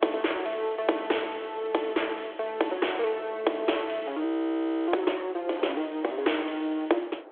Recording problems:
telephone audio; 280 Hz to 3.4 kHz, G.726
wind on the microphone; below 780 Hz, SNR 19 dB
audio freezing; at 4 s for 0.5 s

